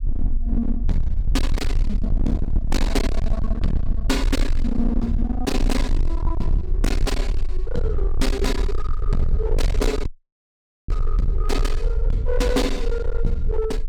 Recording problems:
distorted audio; hard clipping, uneven, signal-to-distortion ratio 7 dB
rumble; below 50 Hz, strongest tone 22 Hz, SNR -1 dB
audio freezing; at 10 s for 1 s

